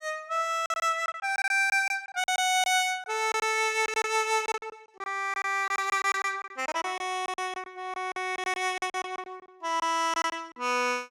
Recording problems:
lost packets; 13% of the sound replaced, filled with silence

